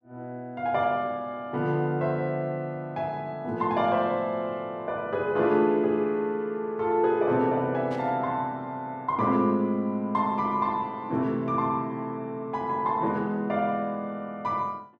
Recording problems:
burst of static; at 8 s; peak -16 dB vs average level

